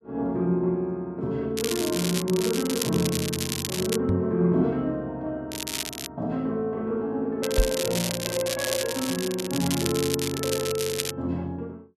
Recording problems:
crackle; from 1.5 to 4 s, at 5.5 s and from 7.5 to 11 s; loose cable, SNR 4 dB
microphone bump; at 4 s and at 7.5 s; peak +7 dB vs average level

